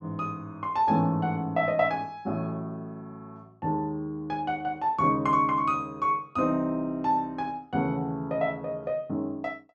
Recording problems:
none

